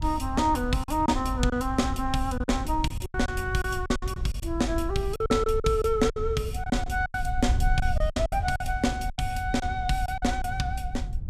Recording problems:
wind on the microphone; below 76 Hz, SNR 5 dB
packet loss; 11% of the sound replaced, filled with silence

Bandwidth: 15.5 kHz